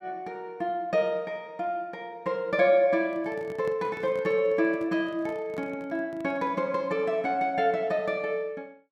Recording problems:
handling noise; from 3 to 6.5 s; peak -9 dB vs average level

